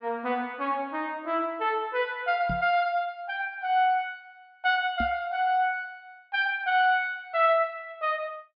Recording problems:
treble missing; nothing above 5.5 kHz
microphone thump; at 2.5 s and at 5 s; peak -3 dB vs average level

